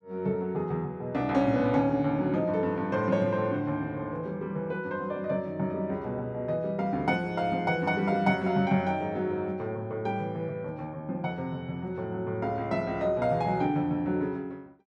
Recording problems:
none

